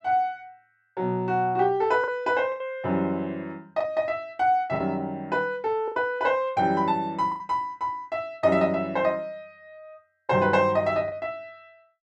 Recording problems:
lost packets; 4% of the sound replaced, filled with the last packet

